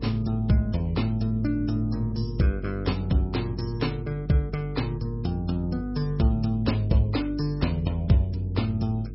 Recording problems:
codec artefacts; MP3, log-spectral distance 2 dB, nothing above 5.5 kHz
electrical hum; 50 Hz, harmonics up to 450 Hz, SNR 10 dB

